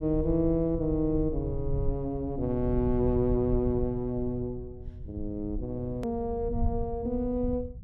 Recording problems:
rumble; below 94 Hz, SNR 8 dB
hard cut with a click; at 6 s

